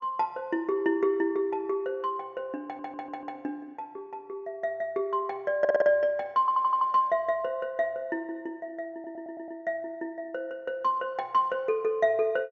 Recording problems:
treble missing; nothing above 6.7 kHz
audio stuttering; 4 times, first at 2.5 s

